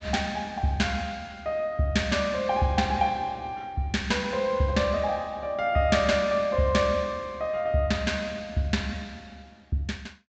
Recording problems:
treble cut off; nothing above 8 kHz

